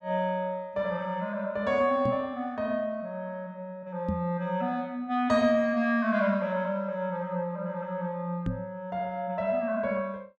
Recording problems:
microphone thump; at 2 s, at 4 s and at 8.5 s; peak +2 dB vs average level

